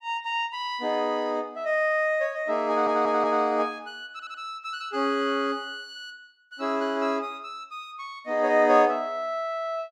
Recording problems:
stutter; at 2.5 s and at 4 s

